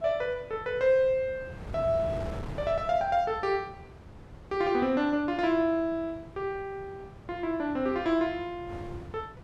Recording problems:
wind noise; below 420 Hz, SNR 16 dB

